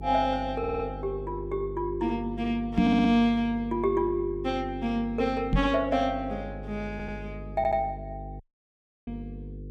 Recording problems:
electrical hum; 50 Hz, harmonics up to 500 Hz, SNR 12 dB
audio stuttering; 4 times, first at 0.5 s
microphone thump; at 3 s and at 5.5 s; peak +7 dB vs average level
audio cutting out; at 8.5 s for 0.5 s

